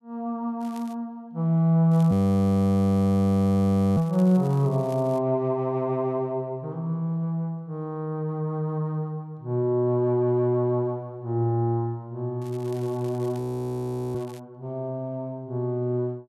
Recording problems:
crackle; at 0.5 s, from 2 to 5 s and from 12 to 14 s; loose cable, SNR 27 dB
audio freezing; at 2 s for 2 s and at 13 s for 1 s

